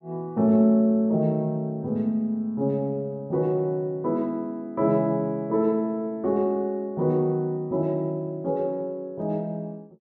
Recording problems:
none

